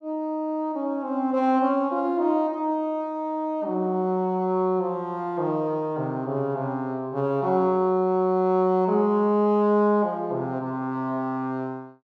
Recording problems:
none

